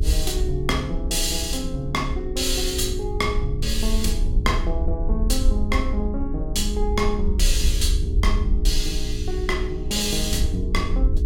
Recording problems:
hum; 60 Hz, harmonics up to 420 Hz, SNR 9 dB
rumble; below 56 Hz, SNR 1 dB

